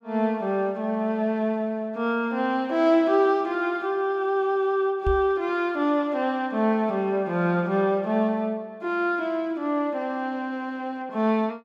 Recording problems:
microphone thump; at 5 s; peak -1 dB vs average level

